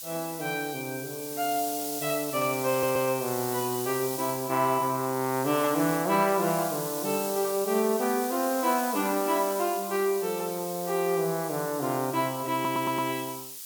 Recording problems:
hiss; slope +7 dB per octave, SNR 7 dB
audio stuttering; at 2.5 s and at 13 s

